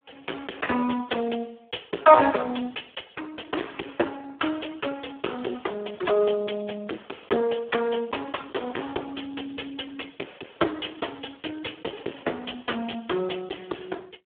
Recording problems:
telephone audio; 280 Hz to 3.5 kHz, Speex
distortion; soft clipping, signal-to-distortion ratio 11 dB

